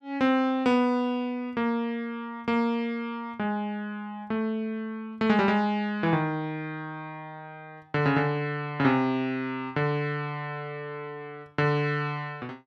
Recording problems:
none

